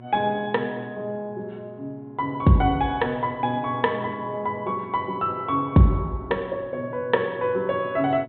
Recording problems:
low-pass filter; nothing above 4 kHz
mains hum; 60 Hz, harmonics up to 1.3 kHz, SNR 22 dB

